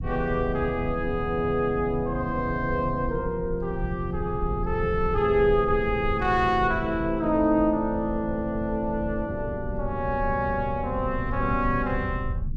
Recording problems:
low-frequency rumble; below 110 Hz, SNR 9 dB

